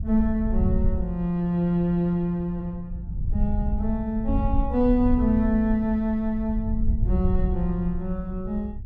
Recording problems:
wind on the microphone; below 78 Hz, SNR 4 dB

